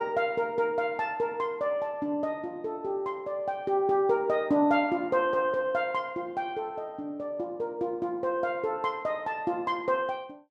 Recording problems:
none

